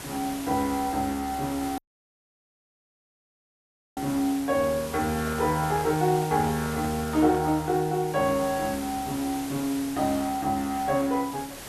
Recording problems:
hiss; slope -3 dB per octave, SNR 12 dB
audio cutting out; at 2 s for 2 s
microphone handling noise; from 5 to 7.5 s; peak -10 dB vs average level

